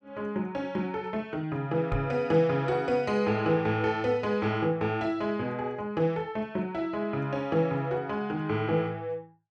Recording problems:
microphone thump; at 2 s; peak -1 dB vs average level

